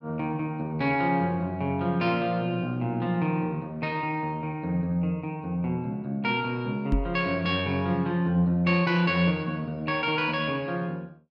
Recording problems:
microphone thump; at 7 s; peak +4 dB vs average level

